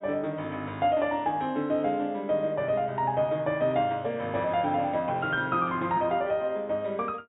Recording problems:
treble cut off; nothing above 4 kHz

